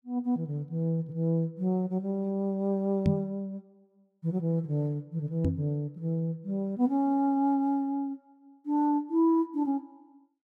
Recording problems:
microphone bump; at 3 s and at 5.5 s; peak +7 dB vs average level

